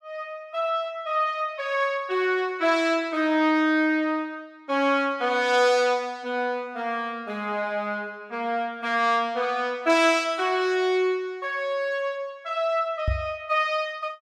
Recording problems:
microphone thump; at 13 s; peak +2 dB vs average level

